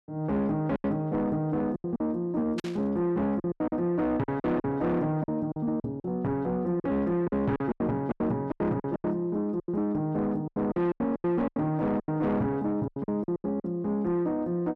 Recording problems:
distortion; soft clipping, signal-to-distortion ratio 11 dB
packet loss; 13% of the sound replaced, filled with silence
static burst; at 2.5 s; peak -6 dB vs average level

